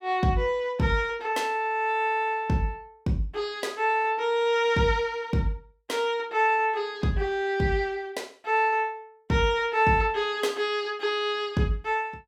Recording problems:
none

